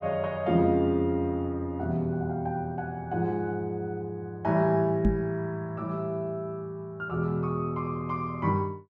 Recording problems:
microphone thump; at 5 s; peak +8 dB vs average level

